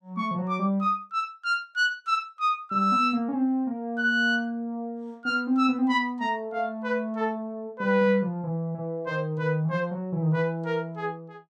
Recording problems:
none

